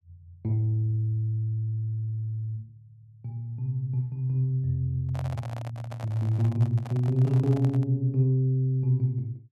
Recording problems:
microphone handling noise; from 5 to 8 s; peak -10 dB vs average level

